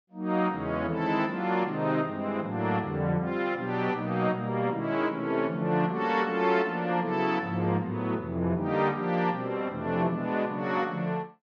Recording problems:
low-pass filter; nothing above 8 kHz

